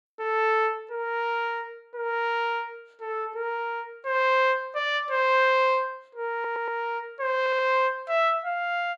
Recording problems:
audio stuttering; at 6.5 s and at 7.5 s

